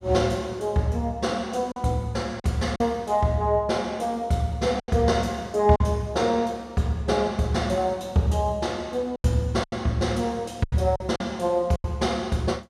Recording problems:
lost packets; 5% of the sound replaced, filled with silence

